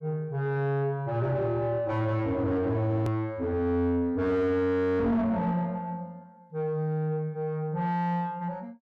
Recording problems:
distortion; soft clipping, signal-to-distortion ratio 6 dB
hard cut with a click; at 3 s

